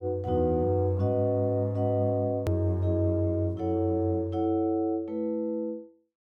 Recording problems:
click at an edit; at 2.5 s

